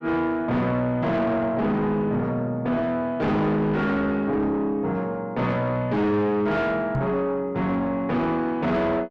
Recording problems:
distorted audio; soft clipping, signal-to-distortion ratio 7 dB
knock on the microphone; at 7 s; peak +1 dB vs average level

